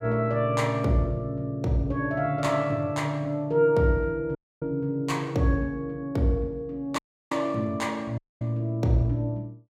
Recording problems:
audio cutting out; at 4.5 s, at 7 s and at 8 s

